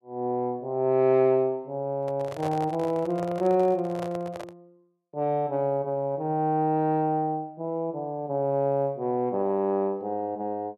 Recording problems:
handling noise; from 2 to 4.5 s; peak -6 dB vs average level

